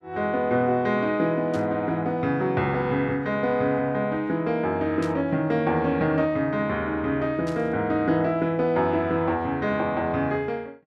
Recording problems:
burst of static; at 1.5 s, at 5 s and at 7.5 s; peak -12 dB vs average level

